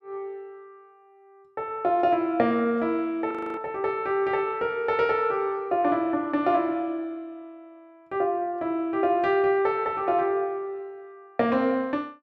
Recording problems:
audio freezing; at 3.5 s

